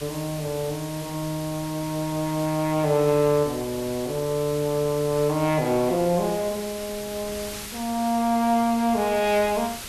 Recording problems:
hiss; SNR 13 dB
wind noise; below 610 Hz, SNR 22 dB

